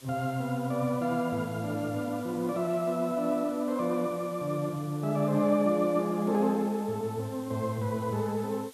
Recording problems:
hiss; slope 0 dB per octave, SNR 22 dB

